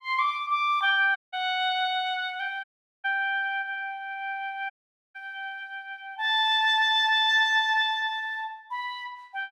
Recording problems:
audio cutting out; at 1 s, at 2.5 s and at 4.5 s

